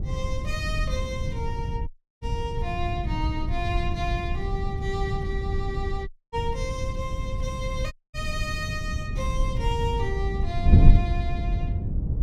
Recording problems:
wind on the microphone; below 110 Hz, SNR -5 dB
audio cutting out; at 2 s, at 6 s and at 8 s

